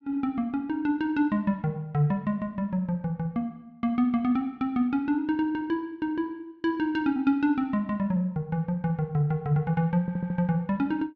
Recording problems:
stutter; at 10 s

